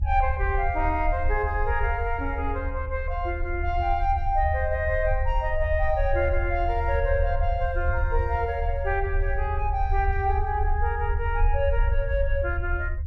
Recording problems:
low-frequency rumble; below 76 Hz, SNR 2 dB

